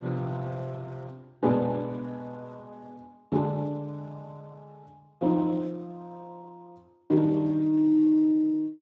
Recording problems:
lossy codec; Speex, log-spectral distance 2 dB

